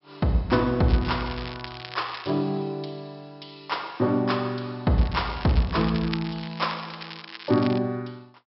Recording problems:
treble cut off; nothing above 5.5 kHz
crackle; from 1 to 2.5 s and from 5 to 8 s; loose cable, SNR 14 dB

